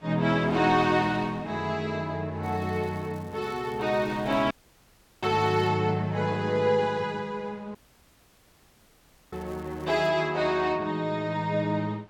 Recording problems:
wind on the microphone; below 2.1 kHz, SNR 21 dB
crackle; from 2.5 to 5.5 s and at 9.5 s; loose cable, SNR 30 dB
audio cutting out; at 4.5 s for 0.5 s and at 8 s for 1.5 s

